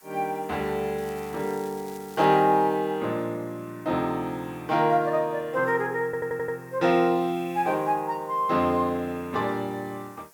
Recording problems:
hiss; SNR 27 dB
crackle; from 1 to 2.5 s; loose cable, SNR 24 dB
stutter; at 6 s

